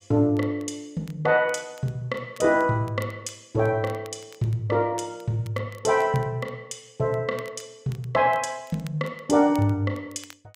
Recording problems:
crackle; vinyl, SNR 27 dB

